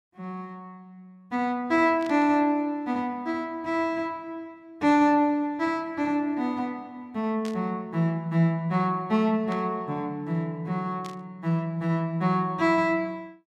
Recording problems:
burst of static; 4 times, first at 2 s; peak -11 dB vs average level

